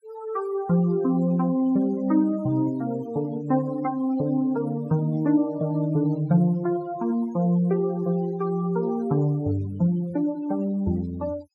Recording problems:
denoising artefacts; signal-to-artefact ratio 23 dB

